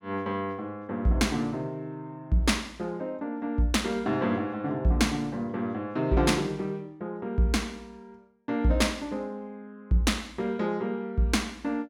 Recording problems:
none

